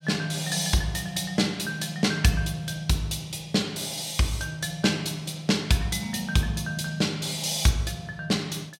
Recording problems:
none

